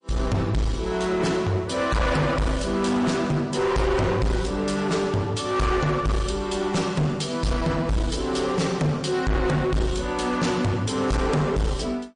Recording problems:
lossy codec; MP3, log-spectral distance 2 dB, nothing above 9.5 kHz
distortion; hard clipping, uneven, signal-to-distortion ratio 6 dB

